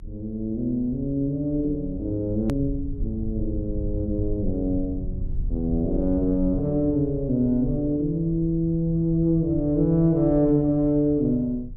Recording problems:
rumble; below 84 Hz, SNR 11 dB
hard cut with a click; at 2.5 s

